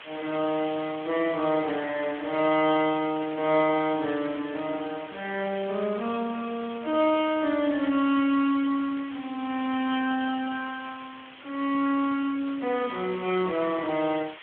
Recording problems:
phone line; 220 Hz to 3.9 kHz, Speex
background hiss; SNR 16 dB

